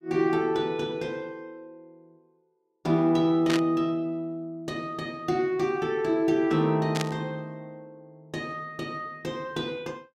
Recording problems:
burst of static; at 3.5 s and at 7 s; peak +1 dB vs average level

